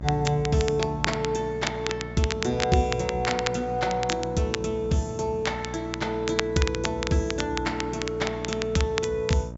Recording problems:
low-pass filter; nothing above 8 kHz
hum; 60 Hz, harmonics up to 1.3 kHz, SNR 11 dB
crackle; vinyl, SNR 7 dB

